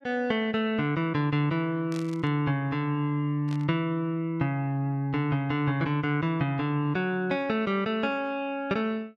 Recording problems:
static burst; at 2 s and at 3.5 s; peak -12 dB vs average level

